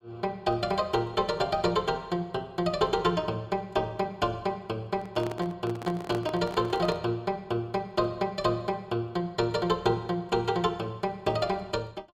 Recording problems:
microphone handling noise; from 5 to 7 s; peak -3 dB vs average level

